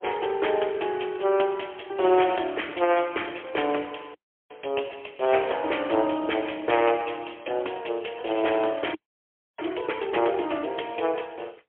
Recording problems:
telephone audio; 280 Hz to 3.3 kHz, AMR-NB, then MP3
audio freezing; at 4 s and at 9 s for 0.5 s

